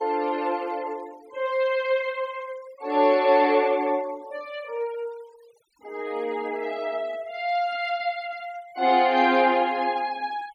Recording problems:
noise reduction artefacts; signal-to-artefact ratio 24 dB

